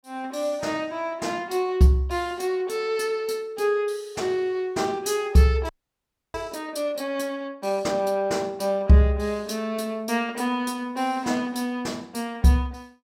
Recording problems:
frozen audio; at 5.5 s for 0.5 s

